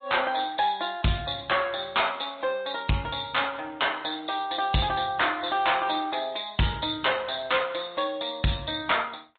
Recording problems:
low-pass filter; nothing above 3.8 kHz
codec artefacts; MP3, log-spectral distance 5 dB
distorted audio; soft clipping, signal-to-distortion ratio 11 dB

